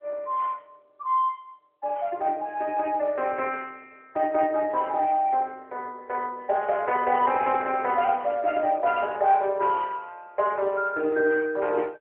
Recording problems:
telephone audio; 340 Hz to 3.1 kHz, AMR-NB

